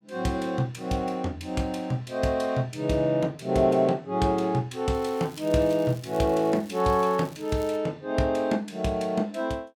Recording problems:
crackling; from 5 to 8 s; loose cable, SNR 24 dB

